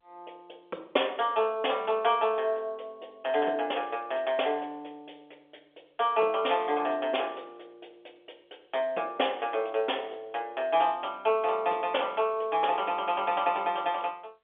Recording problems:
phone line; 340 Hz to 3.5 kHz, G.711

